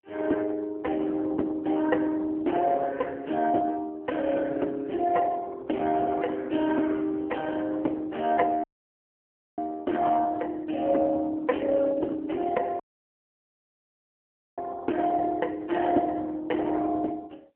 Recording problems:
phone line; 240 Hz to 3.1 kHz, AMR-NB
dropout; at 8.5 s for 1 s and at 13 s for 2 s

